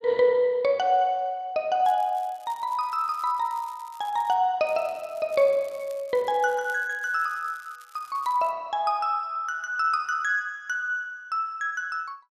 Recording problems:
crackling; from 2 to 4.5 s and from 4.5 to 8.5 s; loose cable, SNR 27 dB

